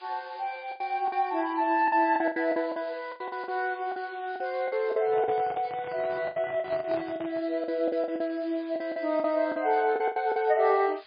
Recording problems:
codec artefacts; MP3, log-spectral distance 6 dB, nothing above 4.4 kHz
background hiss; SNR 23 dB
packet loss; 13% of the sound replaced, filled with the last packet
handling noise; from 5 to 7.5 s; peak -8 dB vs average level

